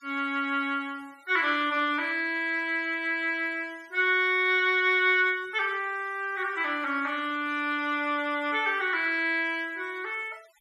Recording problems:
denoising artefacts; signal-to-artefact ratio 28 dB

